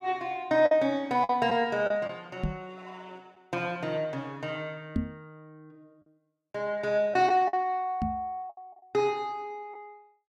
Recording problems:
packet loss; 4% of the sound replaced, filled with the last packet
microphone bump; at 2.5 s, at 5 s and at 8 s; peak +3 dB vs average level

